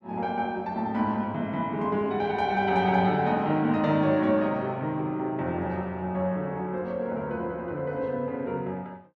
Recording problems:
none

